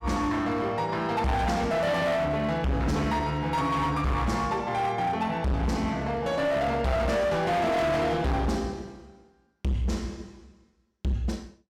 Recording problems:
distorted audio; hard clipping, signal-to-distortion ratio 7 dB

